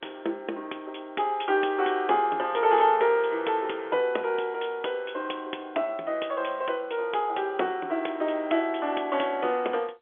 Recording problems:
telephone audio; 260 Hz to 3.5 kHz, G.711

